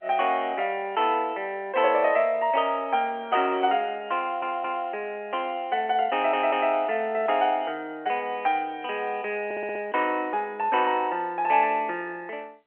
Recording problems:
phone line; 280 Hz to 3.2 kHz, G.711
stutter; at 4 s, at 6 s and at 9.5 s

